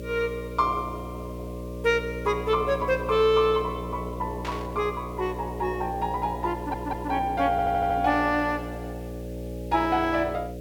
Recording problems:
mains hum; 60 Hz, harmonics up to 600 Hz, SNR 10 dB
hiss; SNR 28 dB
static burst; at 4.5 s; peak -6 dB vs average level
audio stuttering; at 6.5 s and at 7.5 s

